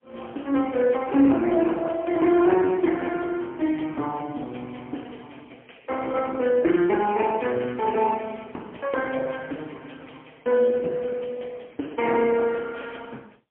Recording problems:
telephone audio; 190 Hz to 3 kHz, AMR-NB, then MP3

